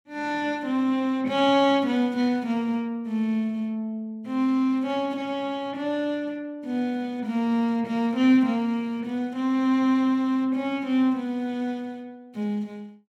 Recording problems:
none

